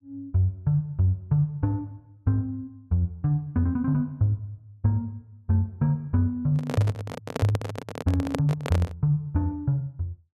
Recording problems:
microphone handling noise; from 6.5 to 9 s; peak +2 dB vs average level

